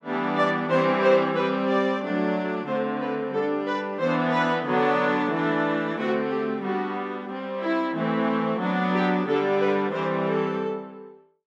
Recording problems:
none

